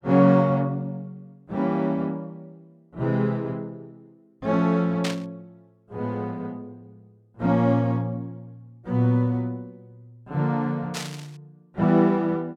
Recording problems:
static burst; at 5 s and at 11 s; peak -2 dB vs average level

